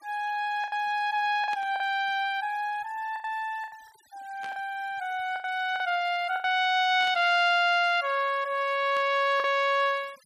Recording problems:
denoising artefacts; signal-to-artefact ratio 26 dB
lost packets; 6% of the sound replaced, filled with the last packet
static burst; 4 times, first at 1.5 s; peak -13 dB vs average level

